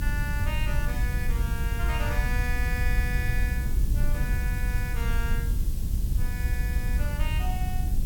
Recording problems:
background hiss; slope +2 dB per octave, SNR 8 dB
rumble; below 78 Hz, SNR -7 dB

